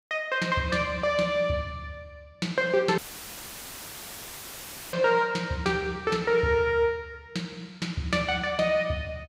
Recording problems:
dropout; at 3 s for 2 s; filled with static

